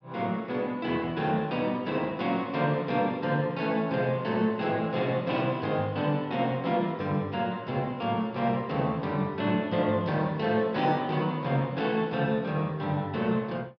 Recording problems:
treble missing; nothing above 5.5 kHz

